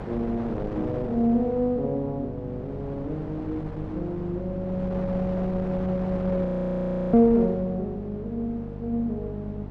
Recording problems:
hum; 50 Hz, harmonics up to 600 Hz, SNR 12 dB
wind noise; below 590 Hz, SNR 12 dB
frozen audio; at 6.5 s for 0.5 s

